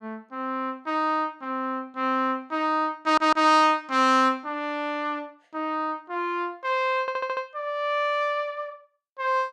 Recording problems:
stutter; at 3 s and at 7 s

